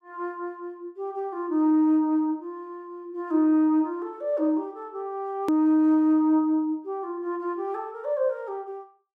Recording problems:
edit click; at 5.5 s

